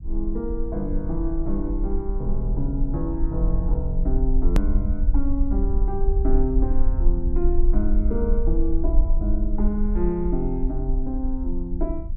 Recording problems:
rumble; below 46 Hz, strongest tone 22 Hz, SNR -2 dB
edit click; at 4.5 s

